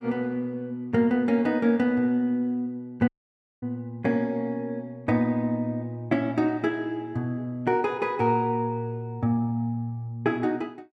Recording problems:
dropout; at 3 s for 0.5 s

